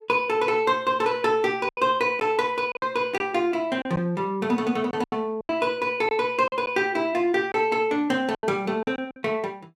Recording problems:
lost packets; 7% of the sound replaced, filled with silence

